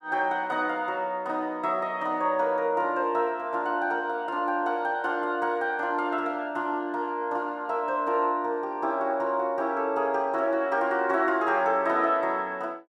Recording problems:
none

